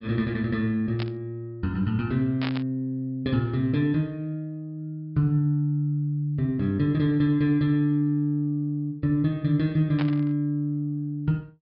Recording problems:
low-pass filter; nothing above 5.3 kHz
burst of static; at 1 s, at 2.5 s and at 10 s; peak -4 dB vs average level

